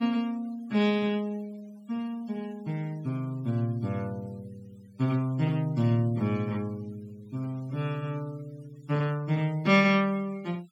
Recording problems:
denoising artefacts; signal-to-artefact ratio 26 dB

